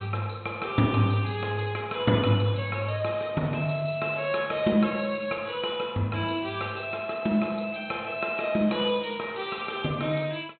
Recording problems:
treble missing; nothing above 4 kHz

